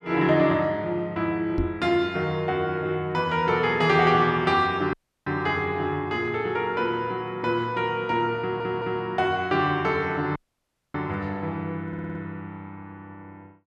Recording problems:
microphone bump; at 1.5 s; peak 0 dB vs average level
dropout; at 5 s and at 10 s for 0.5 s
audio stuttering; at 8.5 s and at 12 s

